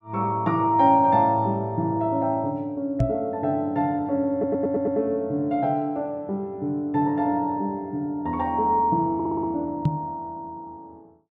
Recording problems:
knock on the microphone; at 3 s and at 10 s; peak +5 dB vs average level
audio stuttering; at 4.5 s and at 9 s

